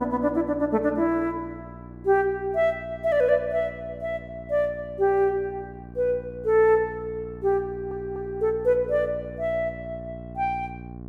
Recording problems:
hum; 60 Hz, harmonics up to 1.1 kHz, SNR 16 dB
audio stuttering; at 7.5 s

